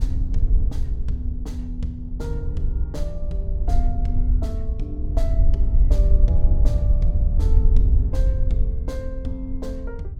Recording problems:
wind on the microphone; below 62 Hz, SNR -10 dB

